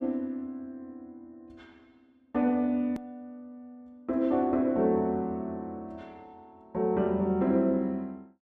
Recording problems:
hard cut with a click; at 3 s

